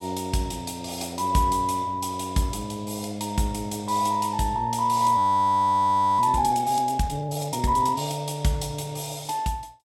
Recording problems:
frozen audio; at 5 s for 1 s

